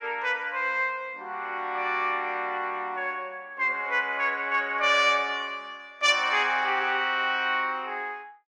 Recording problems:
none

